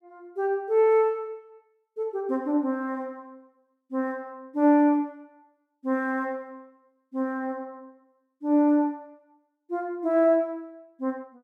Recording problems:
none

